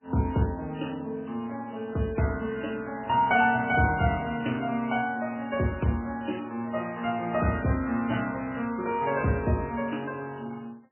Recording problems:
codec artefacts; MP3, log-spectral distance 4 dB, nothing above 3 kHz

